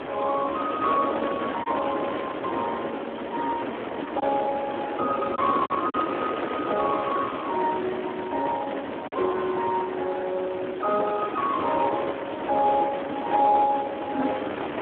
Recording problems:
telephone audio; 240 Hz to 2.1 kHz, Speex
wind on the microphone; below 1.2 kHz, SNR 5 dB
packet loss; 1.2% of the sound replaced, filled with silence
crackling; from 3 to 4 s, from 6.5 to 8.5 s and from 12 to 13 s; loose cable, SNR 27 dB

